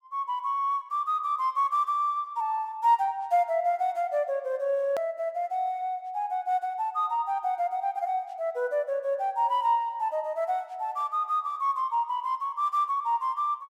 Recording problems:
click at an edit; at 5 s

